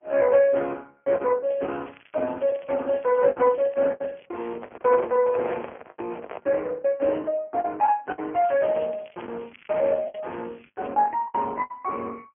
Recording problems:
phone line; 260 Hz to 2.8 kHz, AMR-NB
lost packets; 8% of the sound replaced, filled with the last packet
crackling; from 1.5 to 4.5 s and from 8.5 to 11 s; loose cable, SNR 27 dB
microphone handling noise; from 4.5 to 6.5 s; peak -4 dB vs average level

